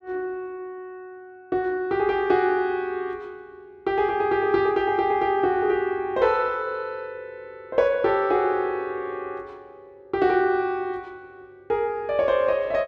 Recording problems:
none

